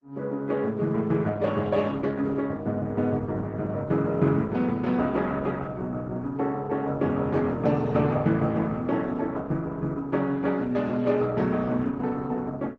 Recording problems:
lossy codec; Opus, log-spectral distance 2 dB

